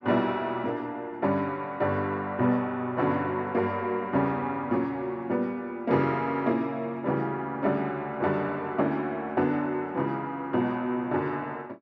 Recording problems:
none

